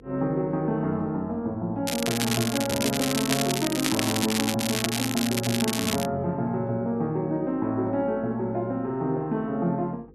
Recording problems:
hum; 50 Hz, harmonics up to 500 Hz, SNR 26 dB
crackling; from 2 to 6 s; loose cable, SNR 2 dB

